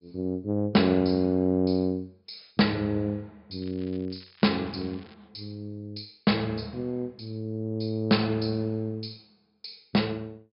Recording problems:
treble cut off; nothing above 5.5 kHz
crackling; from 3.5 to 5 s; loose cable, SNR 27 dB

